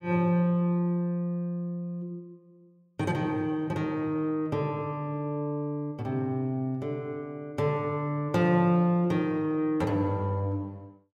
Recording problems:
none

